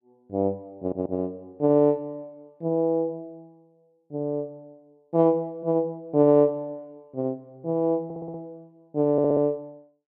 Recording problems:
audio stuttering; at 1 s, at 8 s and at 9 s

